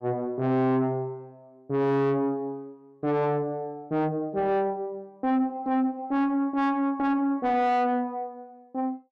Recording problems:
distortion; soft clipping, signal-to-distortion ratio 6 dB

